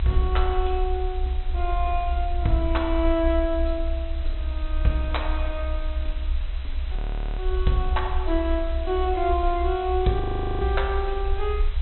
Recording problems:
treble cut off; nothing above 4 kHz
hiss; SNR 18 dB
low-frequency rumble; below 64 Hz, strongest tone 28 Hz, SNR 3 dB
frozen audio; at 7 s and at 10 s

